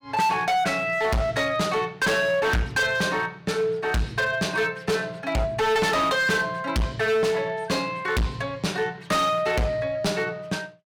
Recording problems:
distortion; hard clipping, signal-to-distortion ratio 6 dB

